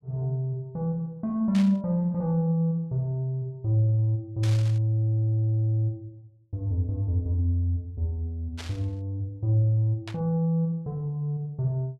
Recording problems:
burst of static; 4 times, first at 1.5 s; peak -8 dB vs average level

